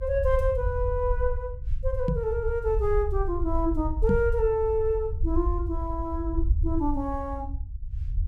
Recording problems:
rumble; below 68 Hz, SNR 3 dB
knock on the microphone; at 2 s and at 4 s; peak +6 dB vs average level

